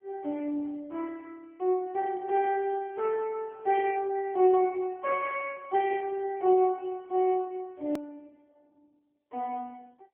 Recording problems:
telephone audio; 260 Hz to 3.5 kHz, AMR-NB
edit click; at 8 s

